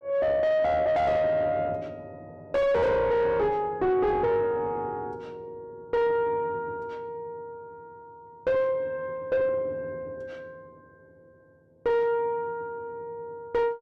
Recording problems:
distortion; soft clipping, signal-to-distortion ratio 6 dB

